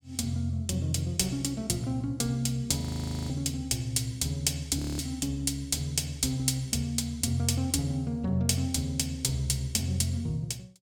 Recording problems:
audio freezing; at 3 s and at 5 s

